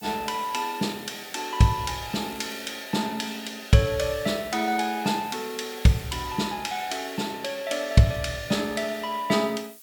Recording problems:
background hiss; slope +4 dB per octave, SNR 20 dB
crackling; at 2 s; loose cable, SNR 24 dB

